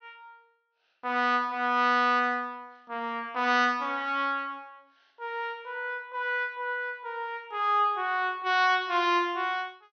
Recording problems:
low-pass filter; nothing above 6.2 kHz

